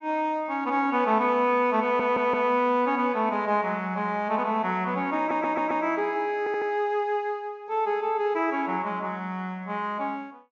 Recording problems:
treble missing; nothing above 7.1 kHz
stutter; at 2 s, at 5 s and at 6.5 s

